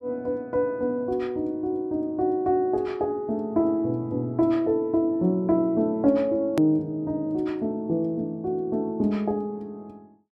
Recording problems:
hard cut with a click; at 6.5 s

